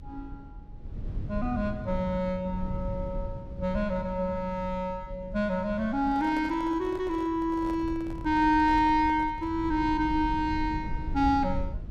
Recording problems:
rumble; below 110 Hz, SNR 11 dB
handling noise; from 6 to 9.5 s; peak -10 dB vs average level

